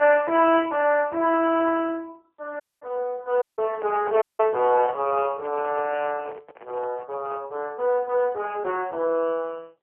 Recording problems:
phone line; 300 Hz to 3.2 kHz, AMR-NB
audio cutting out; at 2.5 s, at 3.5 s and at 4 s
handling noise; from 3.5 to 7.5 s; peak -7 dB vs average level

